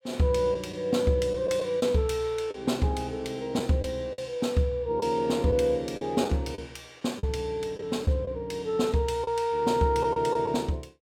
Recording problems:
lost packets; 5% of the sound replaced, filled with the last packet

